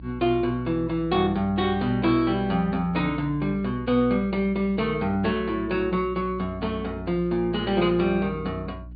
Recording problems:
treble missing; nothing above 4.8 kHz
hum; 60 Hz, harmonics up to 300 Hz, SNR 16 dB

